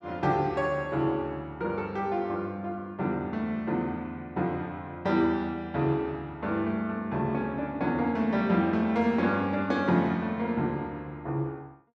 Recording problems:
none

